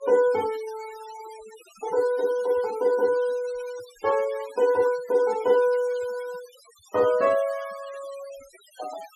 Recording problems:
denoising artefacts; signal-to-artefact ratio 20 dB

